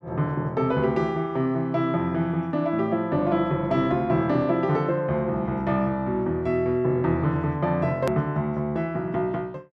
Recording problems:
click at an edit; at 8 s

